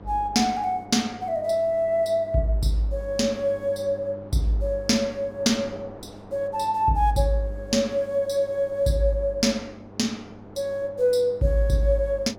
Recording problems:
electrical hum; 50 Hz, harmonics up to 1.3 kHz, SNR 21 dB
wind noise; below 740 Hz, SNR 23 dB

